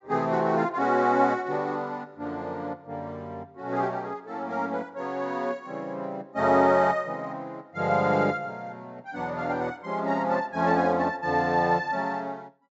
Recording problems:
low-pass filter; nothing above 8 kHz

